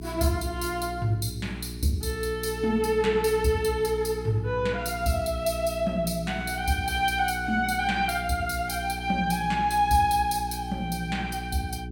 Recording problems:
hum; 60 Hz, harmonics up to 420 Hz, SNR 11 dB

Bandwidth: 17 kHz